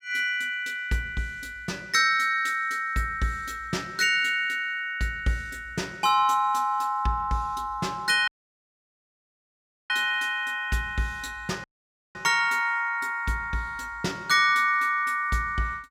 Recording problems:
audio cutting out; at 8.5 s for 1.5 s and at 12 s for 0.5 s

